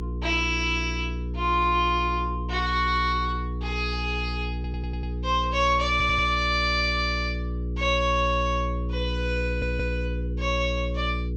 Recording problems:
treble missing; nothing above 8 kHz
hum; 60 Hz, harmonics up to 480 Hz, SNR 5 dB
audio stuttering; at 4.5 s, at 6 s and at 9.5 s

